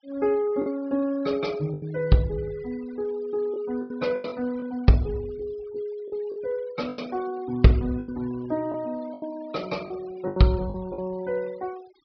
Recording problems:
treble missing; nothing above 5.5 kHz
noise reduction artefacts; signal-to-artefact ratio 23 dB
packet loss; 7% of the sound replaced, filled with the last packet

